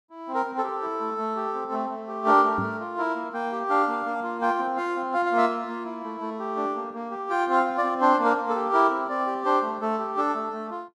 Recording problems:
knock on the microphone; at 2.5 s; peak -2 dB vs average level

